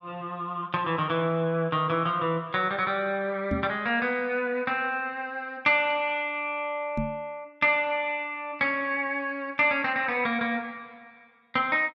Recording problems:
microphone thump; at 3.5 s and at 7 s; peak +1 dB vs average level

